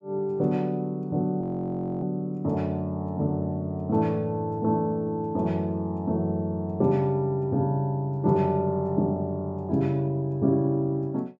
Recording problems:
frozen audio; at 1.5 s for 0.5 s

